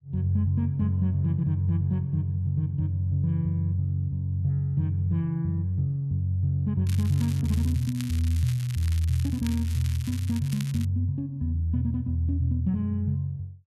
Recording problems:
crackle; from 7 to 11 s; loose cable, SNR 17 dB

